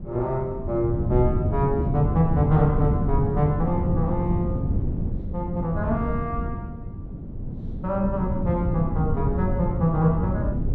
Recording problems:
wind noise; below 180 Hz, SNR 2 dB

